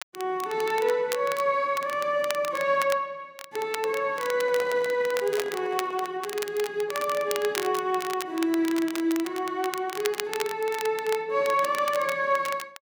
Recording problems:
crackle; vinyl, SNR 11 dB
handling noise; from 4.5 to 6 s; peak -7 dB vs average level

